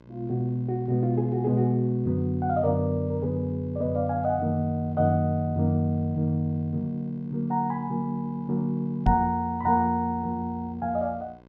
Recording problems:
hum; 60 Hz, harmonics up to 2.6 kHz, SNR 26 dB
microphone thump; at 9 s; peak +6 dB vs average level

